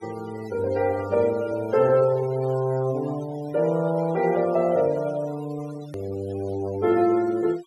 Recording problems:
noise reduction artefacts; signal-to-artefact ratio 21 dB
edit click; at 6 s

